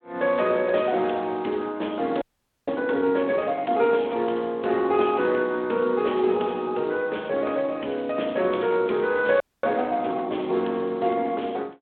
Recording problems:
telephone audio; 280 Hz to 3.7 kHz, Speex
audio freezing; at 2 s and at 9.5 s

